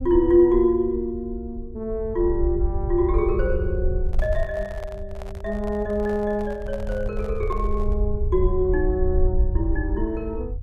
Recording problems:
low-frequency rumble; below 66 Hz, SNR 5 dB
microphone handling noise; from 4 to 8 s; peak -9 dB vs average level

